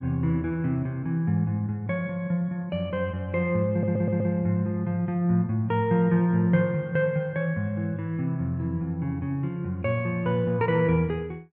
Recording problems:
audio stuttering; at 3.5 s

